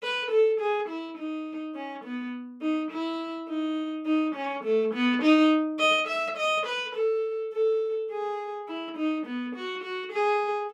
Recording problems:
none

